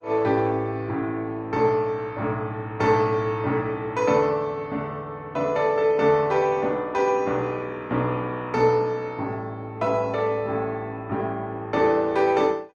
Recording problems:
lossy compression; Opus, log-spectral distance 2 dB, nothing above 9.8 kHz

